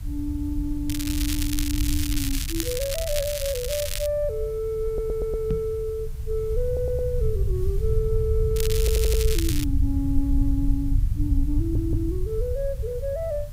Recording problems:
hiss; slope -1 dB per octave, SNR 23 dB
rumble; below 86 Hz, SNR 0 dB
crackle; from 1 to 4 s and from 8.5 to 9.5 s; loose cable, SNR 2 dB
stutter; 4 times, first at 5 s
microphone bump; at 5.5 s; peak +4 dB vs average level

